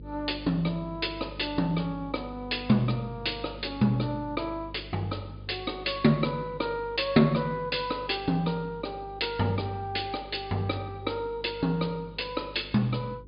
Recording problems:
treble cut off; nothing above 4.9 kHz
mains hum; 50 Hz, harmonics up to 500 Hz, SNR 17 dB

